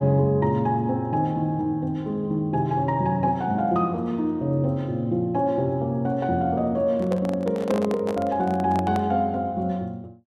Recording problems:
microphone handling noise; from 7 to 9 s; peak -4 dB vs average level

